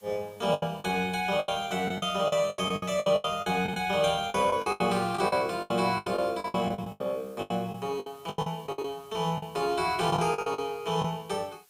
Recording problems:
hiss; slope +1 dB per octave, SNR 29 dB
lost packets; 17% of the sound replaced, filled with the last packet

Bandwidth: 15.5 kHz